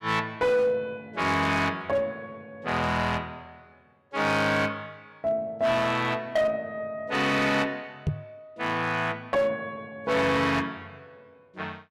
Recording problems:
distortion; hard clipping, uneven, signal-to-distortion ratio 12 dB
knock on the microphone; at 8 s; peak +3 dB vs average level

